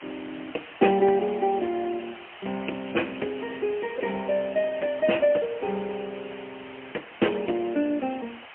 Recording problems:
phone line; 220 Hz to 3.2 kHz, AMR-NB, then MP3
hiss; SNR 16 dB
crackling; from 2 to 5 s; loose cable, SNR 27 dB

